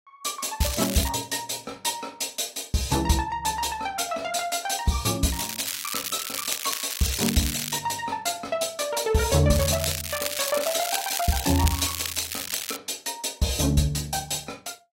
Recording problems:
lossy codec; AAC, log-spectral distance 8 dB, nothing above 16 kHz
crackle; at 0.5 s, from 5.5 to 8 s and from 9.5 to 13 s; loose cable, SNR 4 dB

